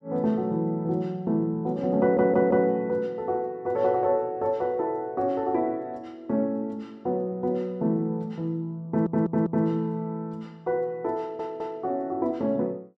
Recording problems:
stutter; at 2 s, at 9 s and at 11 s

